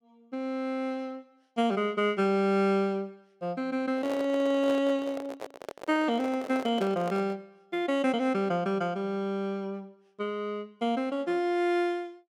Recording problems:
microphone handling noise; from 4 to 7.5 s; peak -4 dB vs average level

